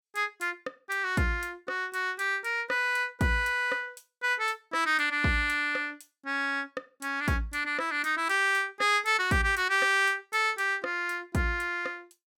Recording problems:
none

